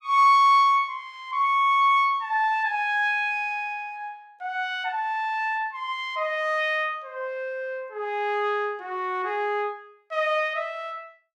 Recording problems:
none

